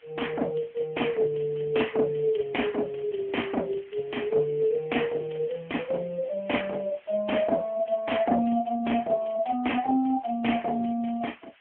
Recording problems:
phone line; 280 Hz to 3.3 kHz, AMR-NB
hiss; SNR 27 dB

